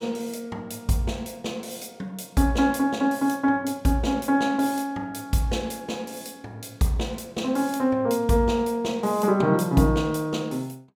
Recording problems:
none

